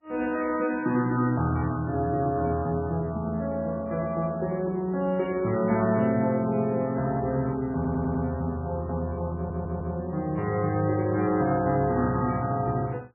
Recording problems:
lossy compression; MP3, log-spectral distance 2 dB, nothing above 2.5 kHz
stutter; at 8 s and at 9.5 s

